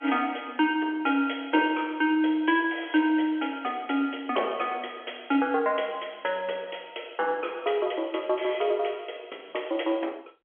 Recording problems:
phone line; 260 Hz to 3.4 kHz, G.711

